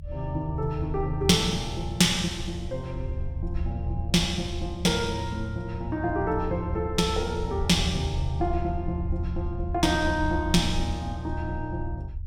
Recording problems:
rumble; below 78 Hz, SNR 6 dB

